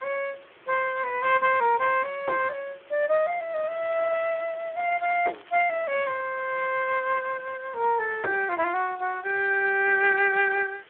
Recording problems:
phone line; 300 Hz to 3.6 kHz, Speex
hiss; SNR 27 dB
crackle; at 1.5 s and from 3.5 to 6 s; loose cable, SNR 27 dB

